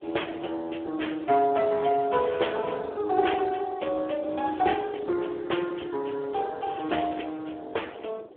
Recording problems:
telephone audio; 240 Hz to 3.5 kHz, Speex
wind on the microphone; below 560 Hz, SNR 20 dB

